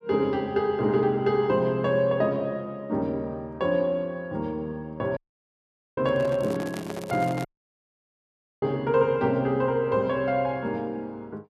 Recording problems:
dropout; at 5 s for 1 s and at 7.5 s for 1 s
handling noise; from 6 to 7.5 s; peak -6 dB vs average level
crackle; from 6.5 to 7.5 s; loose cable, SNR 22 dB

